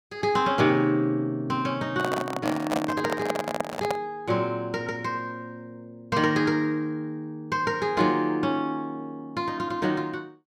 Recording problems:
handling noise; from 2 to 4 s; peak +4 dB vs average level

